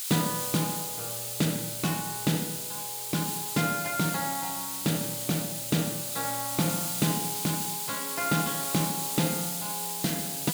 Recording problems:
background hiss; slope +5 dB per octave, SNR 0 dB

